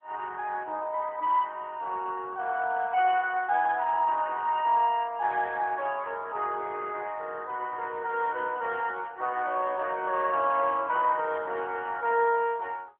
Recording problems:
phone line; 260 Hz to 3.2 kHz, AMR-NB

